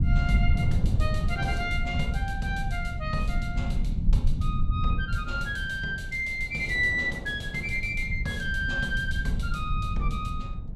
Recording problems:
low-frequency rumble; below 100 Hz, SNR 0 dB
wind on the microphone; below 440 Hz, SNR 16 dB

